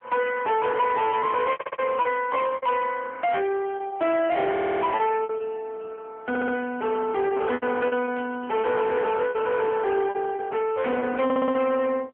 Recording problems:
phone line; 130 Hz to 3.3 kHz, AMR-NB
distortion; soft clipping, signal-to-distortion ratio 10 dB
packet loss; 10% of the sound replaced, filled with repeated pitch periods
audio stuttering; 4 times, first at 1.5 s
static burst; at 3 s and at 8 s; peak -12 dB vs average level

